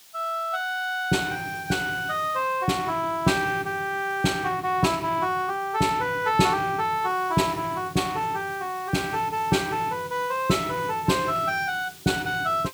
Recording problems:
background hiss; slope +2 dB per octave, SNR 20 dB

